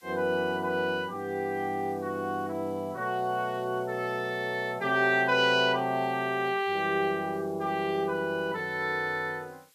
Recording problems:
background hiss; slope +3 dB per octave, SNR 30 dB

